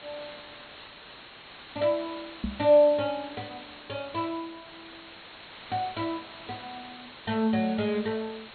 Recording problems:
treble cut off; nothing above 4.3 kHz
background hiss; SNR 17 dB
microphone bump; at 2.5 s; peak 0 dB vs average level

